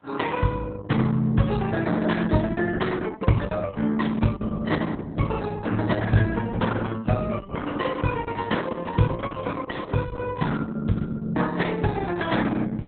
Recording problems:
lossy codec; AAC, then Opus, log-spectral distance 4 dB, nothing above 3.9 kHz

